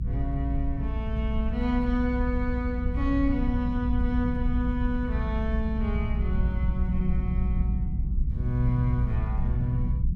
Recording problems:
low-frequency rumble; below 84 Hz, SNR -1 dB

